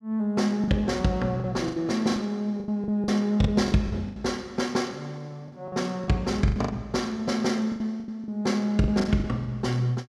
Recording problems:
lost packets; 12% of the sound replaced, filled with the last packet

